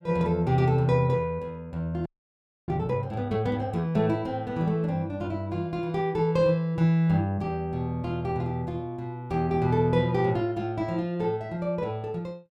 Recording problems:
frozen audio; at 2 s for 0.5 s

